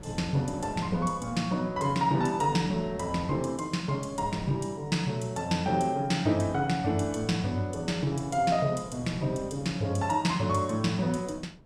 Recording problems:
wind on the microphone; below 360 Hz, SNR 18 dB

